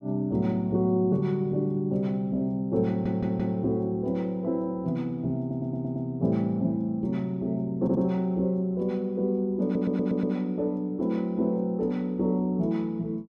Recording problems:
audio stuttering; 4 times, first at 3 s

